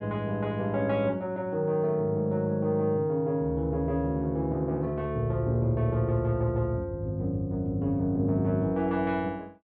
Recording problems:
none

